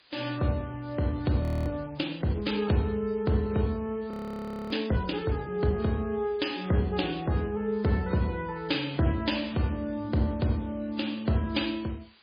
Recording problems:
lossy codec; MP3, log-spectral distance 6 dB, nothing above 20.1 kHz
hiss; SNR 27 dB
audio freezing; at 1.5 s and at 4 s for 0.5 s

